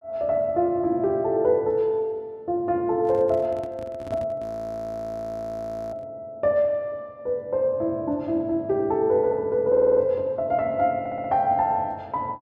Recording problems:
handling noise; from 3 to 6 s; peak -10 dB vs average level
audio freezing; at 4.5 s for 1.5 s
stutter; at 9.5 s and at 11 s

